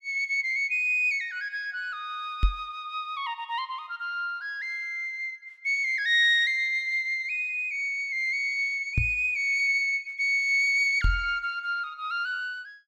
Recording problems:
microphone bump; at 2.5 s, at 9 s and at 11 s; peak +5 dB vs average level

